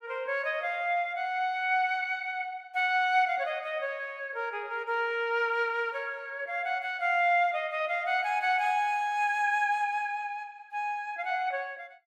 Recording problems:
none

